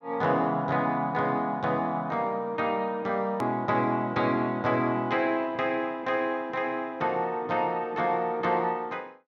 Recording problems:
edit click; at 3.5 s

